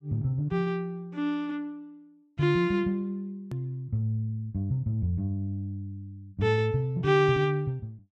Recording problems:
hard cut with a click; at 3.5 s

